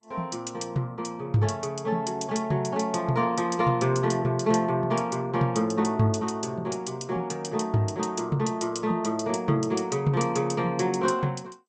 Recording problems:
lossy compression; MP2, then Vorbis, log-spectral distance 3 dB, nothing above 8 kHz

